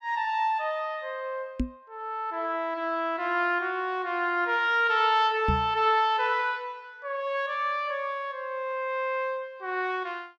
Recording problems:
knock on the microphone; at 1.5 s and at 5.5 s; peak +3 dB vs average level

